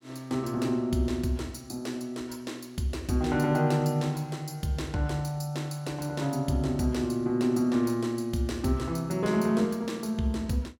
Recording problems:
none

